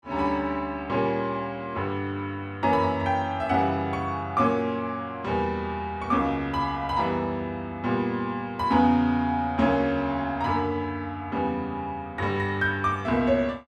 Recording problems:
none

